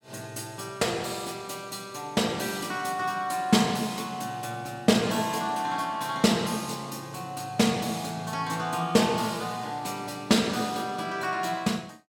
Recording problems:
none

